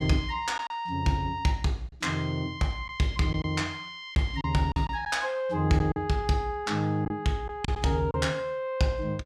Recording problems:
packet loss; 4% of the sound replaced, filled with silence

